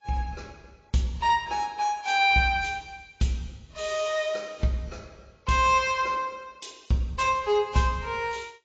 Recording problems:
codec artefacts; AAC, log-spectral distance 3 dB, nothing above 7.6 kHz

